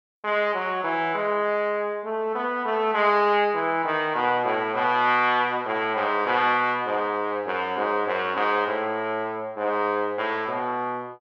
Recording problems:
none

